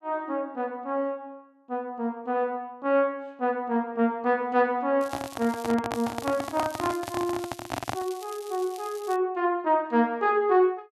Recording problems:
microphone handling noise; from 5 to 8 s; peak +2 dB vs average level
crackle; at 5 s and from 6 to 9 s; loose cable, SNR 19 dB

